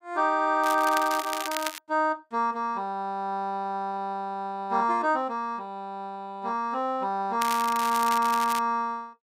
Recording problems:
crackling; from 0.5 to 2 s and from 7.5 to 8.5 s; loose cable, SNR 8 dB

